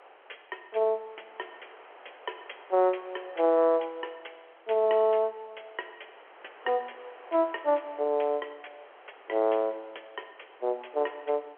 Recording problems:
telephone audio; 340 Hz to 3.3 kHz, G.711
wind noise; below 1.7 kHz, SNR 24 dB

